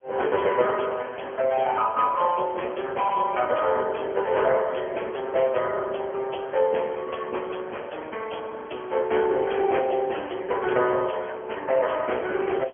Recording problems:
telephone audio; 320 Hz to 3.3 kHz, AMR-NB

